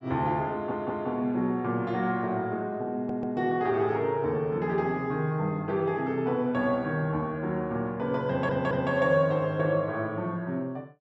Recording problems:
audio stuttering; at 0.5 s, at 3 s and at 8.5 s

